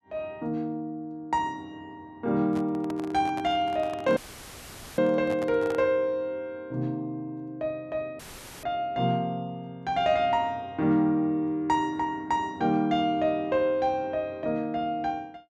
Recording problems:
handling noise; from 2.5 to 6 s; peak -7 dB vs average level
audio cutting out; at 4 s for 1 s and at 8 s; filled with static

